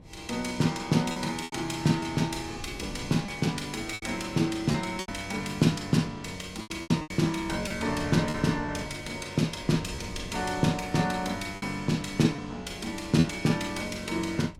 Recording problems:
wind noise; below 200 Hz, SNR 17 dB
lost packets; 6% of the sound replaced, filled with repeated pitch periods

